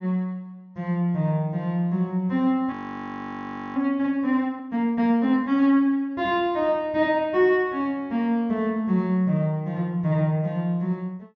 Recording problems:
treble cut off; nothing above 6.7 kHz
frozen audio; at 2.5 s for 1 s

